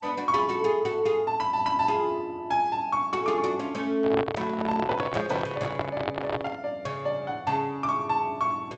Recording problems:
lossy compression; G.722, log-spectral distance 2 dB, nothing above 7.3 kHz
handling noise; from 4 to 6.5 s; peak +3 dB vs average level

